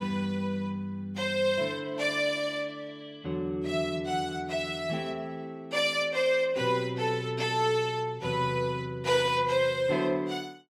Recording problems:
none

